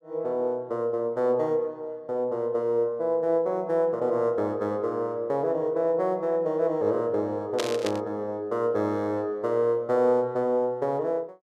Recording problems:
static burst; at 7.5 s; peak 0 dB vs average level

